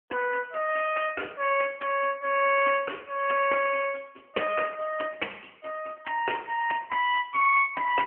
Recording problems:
telephone audio; 260 Hz to 3.1 kHz, AMR-NB

